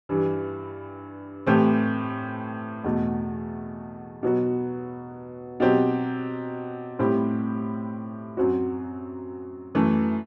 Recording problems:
none

